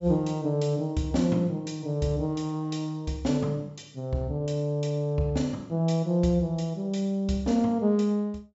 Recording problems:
treble missing; nothing above 8 kHz

